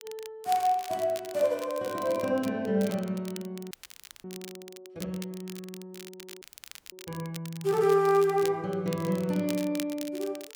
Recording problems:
crackling; vinyl, SNR 16 dB
audio freezing; at 3.5 s for 0.5 s and at 6.5 s for 0.5 s

